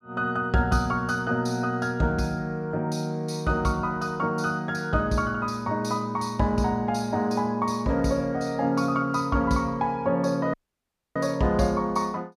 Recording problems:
dropout; at 11 s for 0.5 s

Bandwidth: 15 kHz